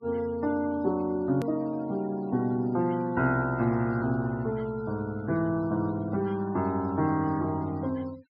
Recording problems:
treble missing; nothing above 5.5 kHz
denoising artefacts; signal-to-artefact ratio 25 dB
click at an edit; at 1.5 s

